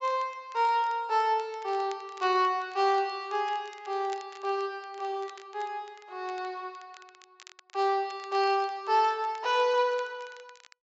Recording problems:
treble cut off; nothing above 8 kHz
crackling; vinyl, SNR 25 dB

